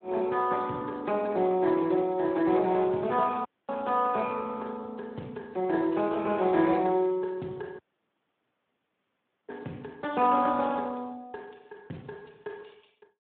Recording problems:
phone line; 130 Hz to 3.7 kHz, Speex
dropout; at 3.5 s and at 8 s for 1.5 s

